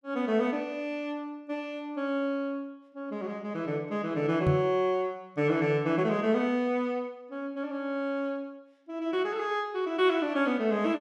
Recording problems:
microphone bump; at 4.5 s; peak +7 dB vs average level

